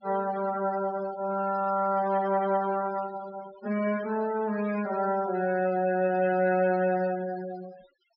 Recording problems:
low-pass filter; nothing above 5.4 kHz
denoising artefacts; signal-to-artefact ratio 18 dB

